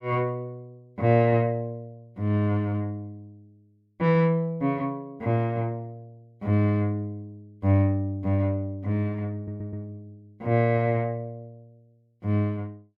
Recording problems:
audio stuttering; at 9.5 s

